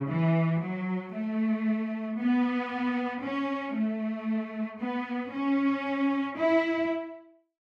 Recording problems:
none

